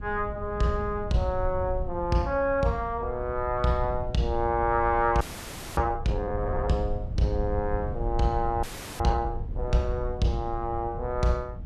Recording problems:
rumble; below 92 Hz, SNR 8 dB
audio freezing; at 5 s for 0.5 s and at 8.5 s

